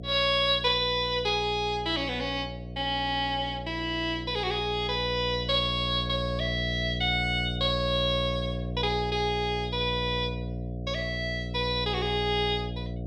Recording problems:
hum; 60 Hz, harmonics up to 720 Hz, SNR 8 dB

